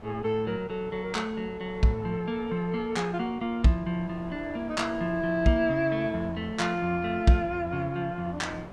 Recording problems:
wind noise; below 810 Hz, SNR 18 dB

